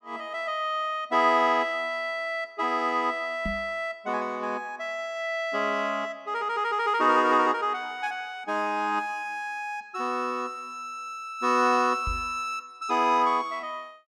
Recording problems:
microphone thump; at 3.5 s and at 12 s; peak -3 dB vs average level

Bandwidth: 15.5 kHz